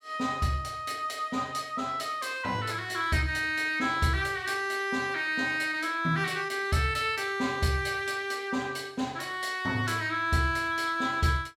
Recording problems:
none

